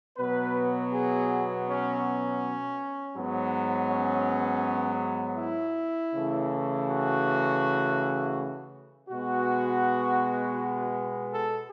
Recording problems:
none

